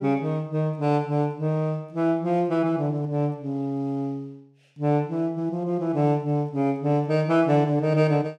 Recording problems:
none

